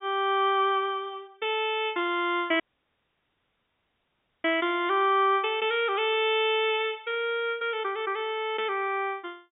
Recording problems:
treble cut off; nothing above 4 kHz
audio cutting out; at 2.5 s for 2 s

